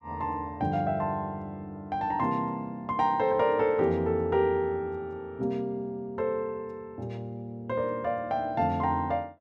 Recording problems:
none

